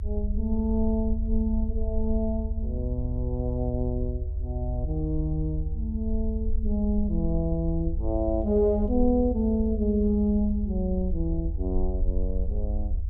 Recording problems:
low-frequency rumble; below 76 Hz, SNR 3 dB

